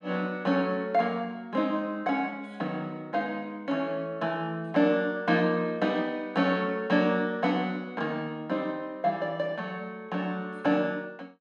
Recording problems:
none

